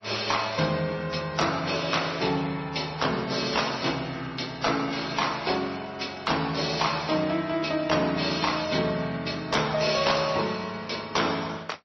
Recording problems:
codec artefacts; MP3, then AAC, log-spectral distance 8 dB, nothing above 5.8 kHz
distorted audio; hard clipping, signal-to-distortion ratio 11 dB

